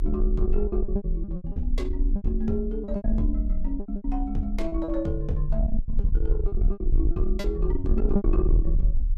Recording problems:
distortion; soft clipping, signal-to-distortion ratio 10 dB
rumble; below 46 Hz, SNR -1 dB
lost packets; 13% of the sound replaced, filled with repeated pitch periods

